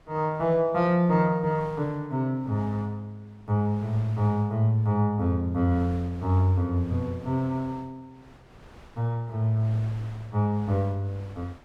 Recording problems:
wind on the microphone; below 1.1 kHz, SNR 23 dB

